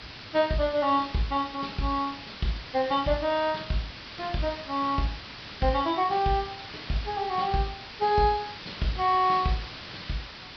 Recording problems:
treble missing; nothing above 5.5 kHz
hiss; SNR 12 dB

